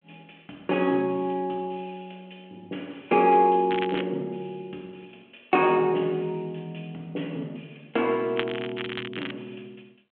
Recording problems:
phone line; 190 Hz to 3.3 kHz, G.726
crackling; at 3.5 s and at 8.5 s; loose cable, SNR 11 dB

